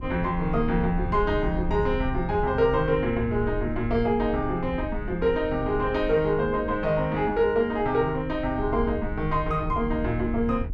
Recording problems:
wind on the microphone; below 86 Hz, SNR 10 dB

